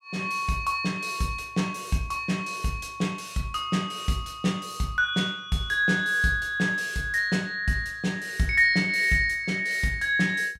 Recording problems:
none

